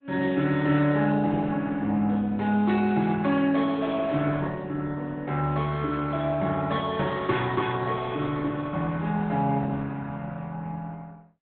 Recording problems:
treble missing; nothing above 4.1 kHz
lossy compression; Opus, log-spectral distance 3 dB

